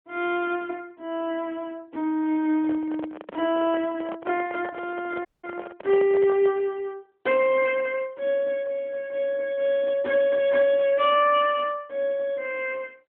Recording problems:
phone line; 170 Hz to 3.5 kHz, AMR-NB
microphone handling noise; from 2.5 to 6.5 s; peak -6 dB vs average level
dropout; at 5.5 s

